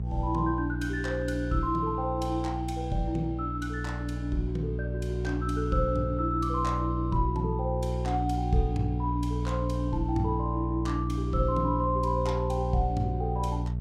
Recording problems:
mains hum; 60 Hz, harmonics up to 420 Hz, SNR 2 dB

